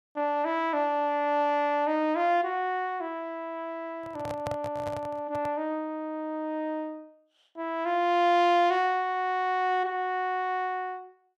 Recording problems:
microphone handling noise; from 4 to 5.5 s; peak -3 dB vs average level

